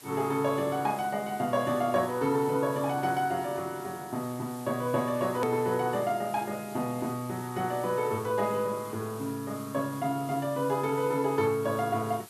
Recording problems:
hiss; slope -1 dB per octave, SNR 18 dB
click at an edit; at 5.5 s

